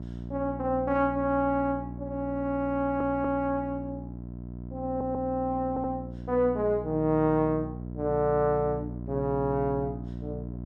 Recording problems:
hum; 60 Hz, harmonics up to 720 Hz, SNR 10 dB
audio stuttering; at 3 s, at 5 s and at 5.5 s

